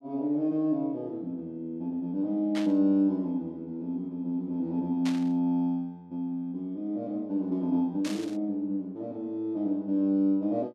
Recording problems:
burst of static; at 2.5 s, at 5 s and at 8 s; peak -5 dB vs average level

